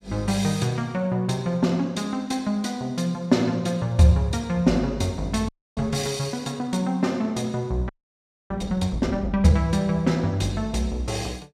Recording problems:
audio freezing; at 5.5 s and at 8 s for 0.5 s

